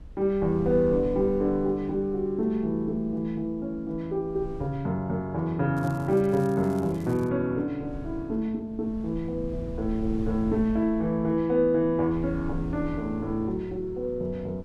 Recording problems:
wind noise; below 110 Hz, SNR 15 dB
crackle; from 6 to 7.5 s; loose cable, SNR 26 dB

